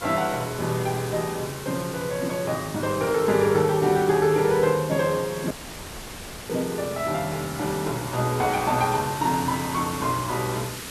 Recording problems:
hiss; SNR 12 dB
dropout; at 5.5 s for 1 s

